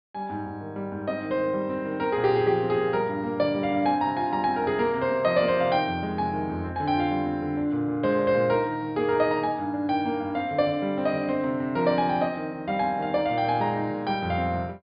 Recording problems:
low-pass filter; nothing above 4.9 kHz

